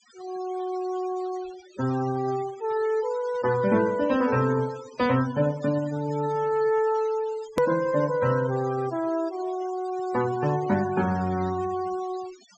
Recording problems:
low-pass filter; nothing above 8 kHz
noise reduction artefacts; signal-to-artefact ratio 18 dB
click at an edit; at 7.5 s

